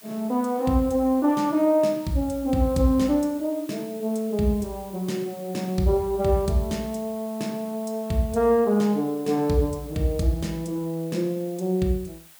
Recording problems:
hiss; SNR 22 dB

